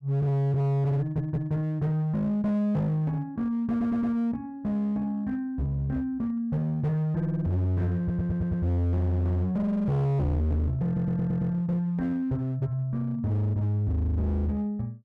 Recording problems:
distorted audio; hard clipping, uneven, signal-to-distortion ratio 6 dB
stutter; 4 times, first at 1 s

